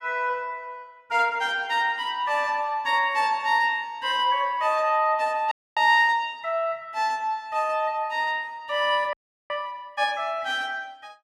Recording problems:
audio freezing; at 5.5 s and at 9 s

